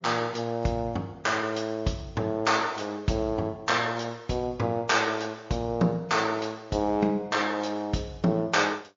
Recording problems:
lossy codec; MP3, log-spectral distance 3 dB, nothing above 6.5 kHz

